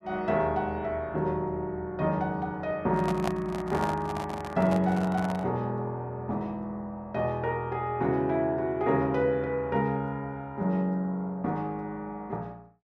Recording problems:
handling noise; from 3 to 5.5 s; peak +1 dB vs average level

